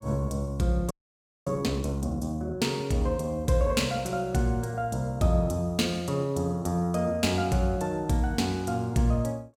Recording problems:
frozen audio; at 1 s for 0.5 s

